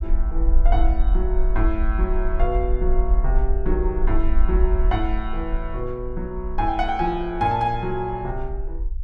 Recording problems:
low-frequency rumble; below 48 Hz, SNR -1 dB

